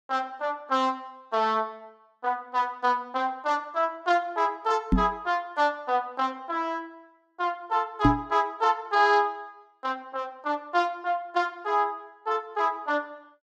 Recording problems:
knock on the microphone; at 5 s and at 8 s; peak +10 dB vs average level

